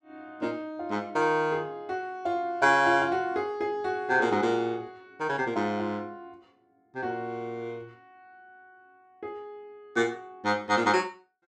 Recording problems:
none

